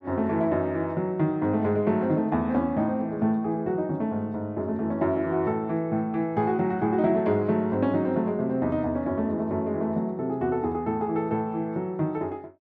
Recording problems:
none

